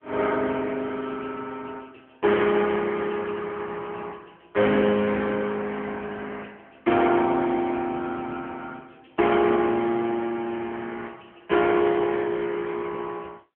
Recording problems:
phone line; 150 Hz to 3.4 kHz, AMR-NB

